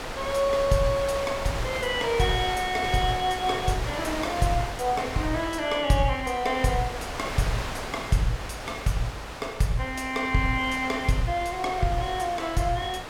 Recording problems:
wind on the microphone; below 2.5 kHz, SNR 8 dB

